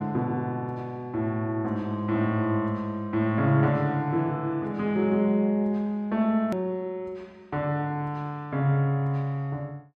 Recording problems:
edit click; at 6.5 s

